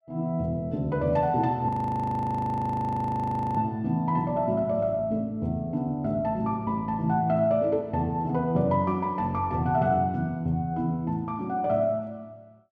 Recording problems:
frozen audio; at 1.5 s for 2 s

